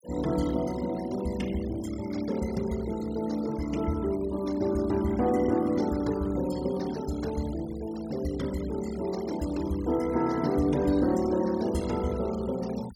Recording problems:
denoising artefacts; signal-to-artefact ratio 18 dB

